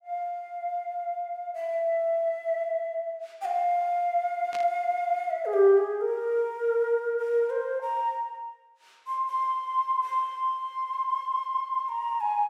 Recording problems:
static burst; at 4.5 s; peak -9 dB vs average level

